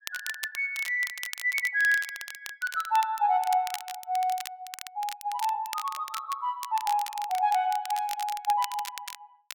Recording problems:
crackling; vinyl, SNR 12 dB

